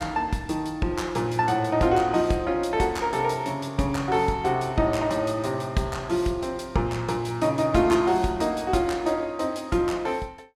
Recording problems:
none

